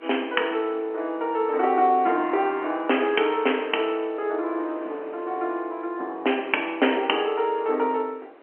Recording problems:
telephone audio; 280 Hz to 3.2 kHz, G.711
wind noise; below 1 kHz, SNR 22 dB

